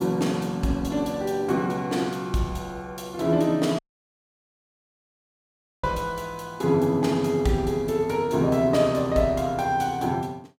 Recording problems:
dropout; at 4 s for 2 s

